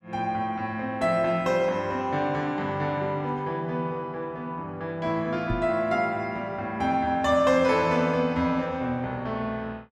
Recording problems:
microphone thump; at 5.5 s; peak 0 dB vs average level

